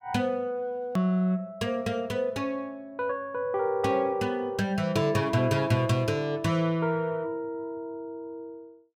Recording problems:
click at an edit; at 1 s

